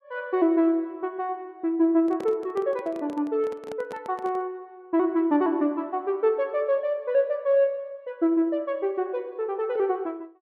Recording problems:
handling noise; from 2 to 4.5 s; peak -9 dB vs average level

